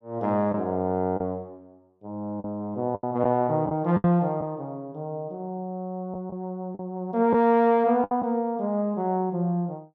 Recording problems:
packet loss; 5% of the sound replaced, filled with the last packet

